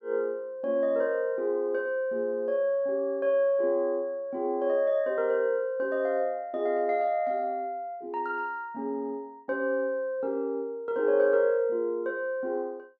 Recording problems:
none

